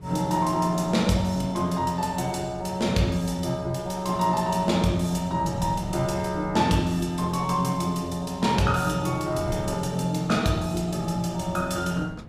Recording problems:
wind noise; below 190 Hz, SNR 16 dB

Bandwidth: 15.5 kHz